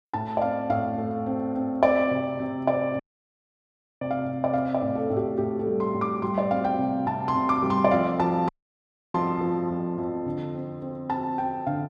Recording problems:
dropout; at 3 s for 1 s and at 8.5 s for 0.5 s

